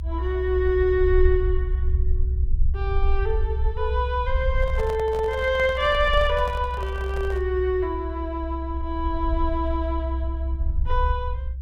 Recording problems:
rumble; below 66 Hz, SNR 2 dB
microphone handling noise; from 4.5 to 7.5 s; peak -6 dB vs average level

